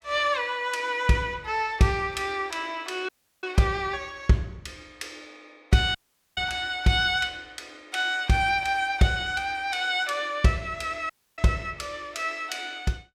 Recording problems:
audio cutting out; at 3 s, at 6 s and at 11 s

